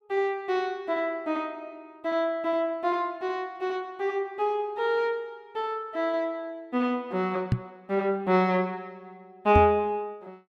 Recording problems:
knock on the microphone; at 7.5 s and at 9.5 s; peak +7 dB vs average level

